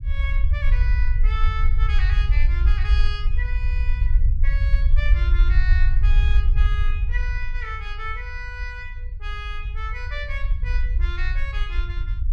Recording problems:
low-frequency rumble; below 58 Hz, SNR -11 dB

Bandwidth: 14.5 kHz